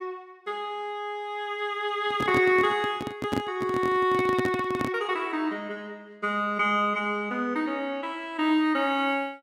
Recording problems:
handling noise; from 2 to 5 s; peak +2 dB vs average level

